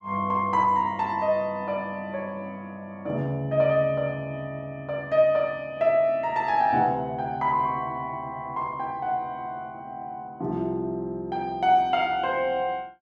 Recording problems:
none

